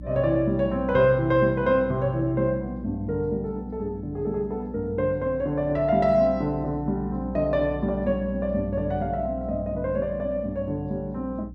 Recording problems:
hum; 60 Hz, harmonics up to 300 Hz, SNR 14 dB

